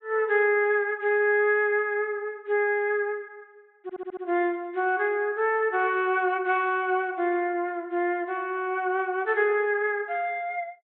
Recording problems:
treble missing; nothing above 4 kHz
audio stuttering; at 4 s

